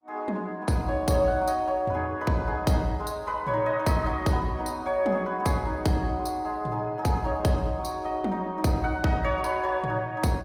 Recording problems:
lossy codec; Opus, log-spectral distance 2 dB, nothing above 20.1 kHz

